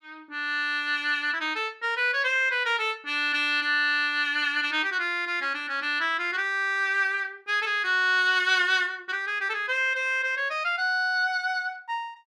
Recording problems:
none

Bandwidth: 13.5 kHz